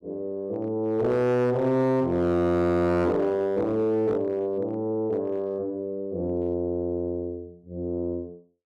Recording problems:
distorted audio; hard clipping, uneven, signal-to-distortion ratio 11 dB

